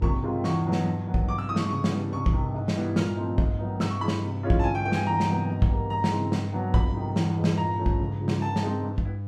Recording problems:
hum; 50 Hz, harmonics up to 500 Hz, SNR 7 dB

